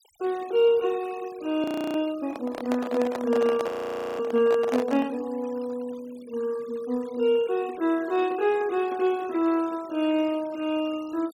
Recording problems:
noise reduction artefacts; signal-to-artefact ratio 22 dB
frozen audio; at 1.5 s and at 3.5 s for 0.5 s
microphone handling noise; from 2 to 5 s; peak -2 dB vs average level

